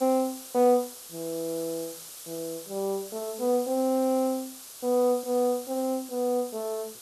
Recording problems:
background hiss; SNR 13 dB

